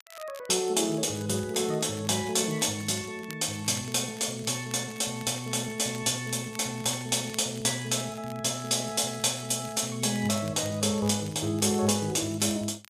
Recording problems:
crackle; vinyl, SNR 22 dB

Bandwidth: 14.5 kHz